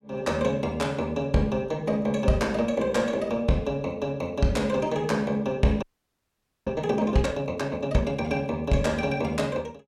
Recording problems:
audio freezing; at 6 s for 1 s

